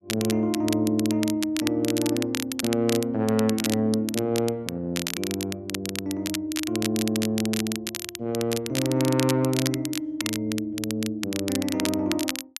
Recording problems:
crackling; vinyl, SNR 6 dB

